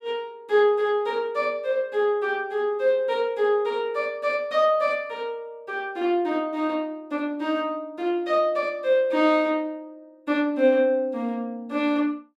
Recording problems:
none

